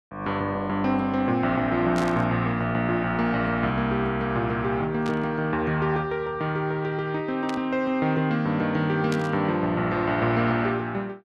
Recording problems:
burst of static; 4 times, first at 2 s; peak -6 dB vs average level

